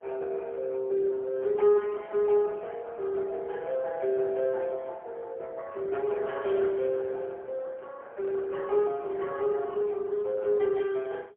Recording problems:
phone line; 340 Hz to 3.2 kHz, AMR-NB, then MP3

